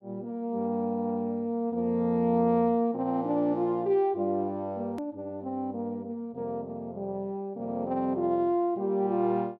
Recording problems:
edit click; at 5 s

